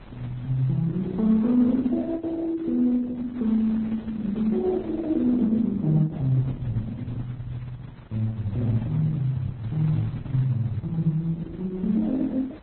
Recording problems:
codec artefacts; Opus, then Vorbis, log-spectral distance 2 dB, nothing above 3.6 kHz
wind noise; below 770 Hz, SNR 23 dB

